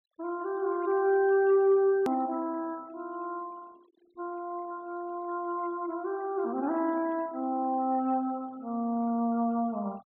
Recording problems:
treble cut off; nothing above 4 kHz
noise reduction artefacts; signal-to-artefact ratio 25 dB
edit click; at 2 s

